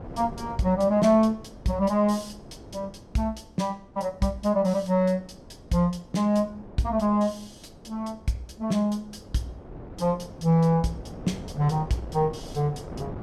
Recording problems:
wind on the microphone; below 480 Hz, SNR 18 dB

